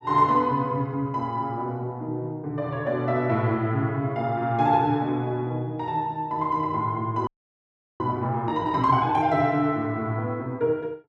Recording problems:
frozen audio; at 7.5 s for 0.5 s

